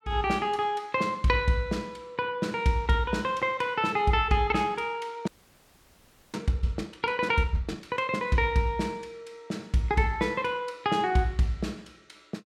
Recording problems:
frozen audio; at 5.5 s for 1 s

